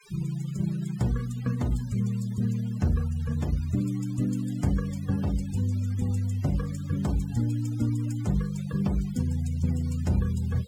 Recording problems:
denoising artefacts; signal-to-artefact ratio 21 dB

